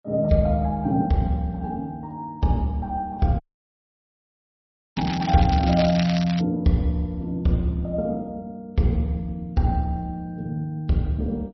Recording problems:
lossy codec; MP3, log-spectral distance 2 dB, nothing above 5.8 kHz
audio cutting out; at 3.5 s for 1.5 s
crackle; from 5 to 6.5 s; loose cable, SNR 10 dB

